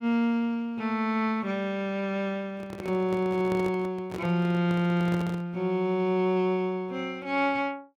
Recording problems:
microphone handling noise; from 2.5 to 5.5 s; peak -5 dB vs average level

